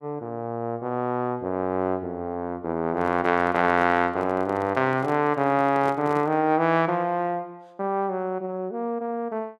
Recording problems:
handling noise; from 3 to 6.5 s; peak -7 dB vs average level

